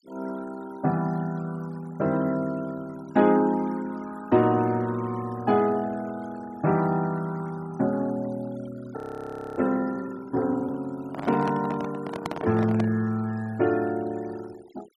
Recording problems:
denoising artefacts; signal-to-artefact ratio 22 dB
frozen audio; at 9 s for 0.5 s
handling noise; from 11 to 13 s; peak -1 dB vs average level

